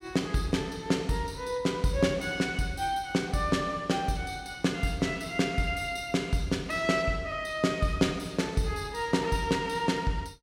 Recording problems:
none

